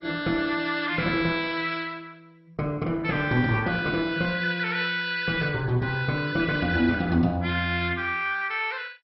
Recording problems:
codec artefacts; MP2, log-spectral distance 4 dB, nothing above 4.5 kHz

